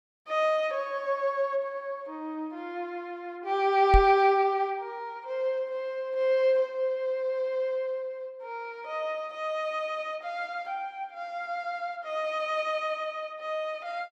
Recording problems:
knock on the microphone; at 4 s; peak +8 dB vs average level

